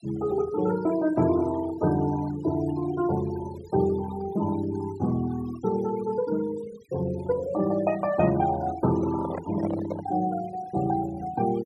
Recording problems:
denoising artefacts; signal-to-artefact ratio 16 dB
microphone handling noise; from 9 to 10 s; peak -2 dB vs average level

